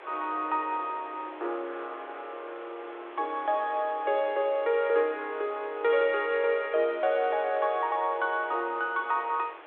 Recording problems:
phone line; 300 Hz to 3.8 kHz, G.726
hiss; SNR 18 dB

